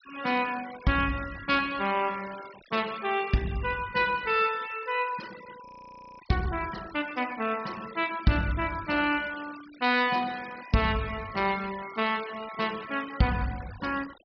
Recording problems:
treble cut off; nothing above 5.5 kHz
denoising artefacts; signal-to-artefact ratio 17 dB
audio freezing; at 5.5 s for 0.5 s

